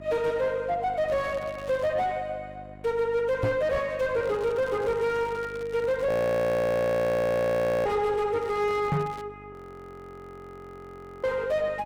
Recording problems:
distorted audio; soft clipping, signal-to-distortion ratio 7 dB
hum; 50 Hz, harmonics up to 1.4 kHz, SNR 21 dB
crackle; at 1 s, from 4 to 6 s and at 8.5 s; loose cable, SNR 22 dB
knock on the microphone; at 3.5 s and at 9 s; peak +6 dB vs average level
audio freezing; at 6 s for 2 s and at 9.5 s for 1.5 s

